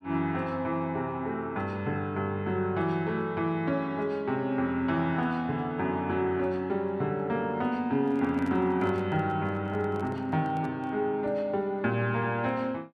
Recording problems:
microphone handling noise; from 8 to 11 s; peak -10 dB vs average level

